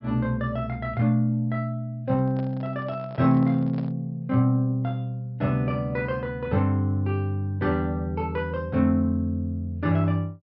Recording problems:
treble missing; nothing above 5.4 kHz
microphone handling noise; from 2 to 4 s; peak -11 dB vs average level

